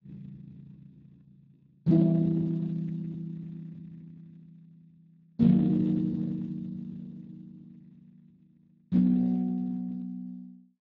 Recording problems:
low-pass filter; nothing above 7.1 kHz
codec artefacts; Speex, log-spectral distance 2 dB

